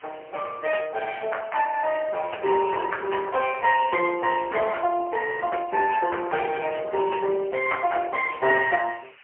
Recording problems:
phone line; 320 Hz to 2.3 kHz, AMR-NB, then MP3
hiss; SNR 27 dB

